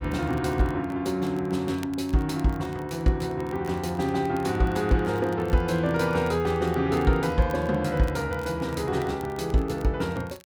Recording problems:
crackling; vinyl, SNR 25 dB

